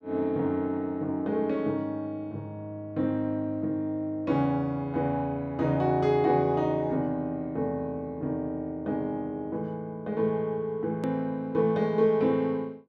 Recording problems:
edit click; at 11 s

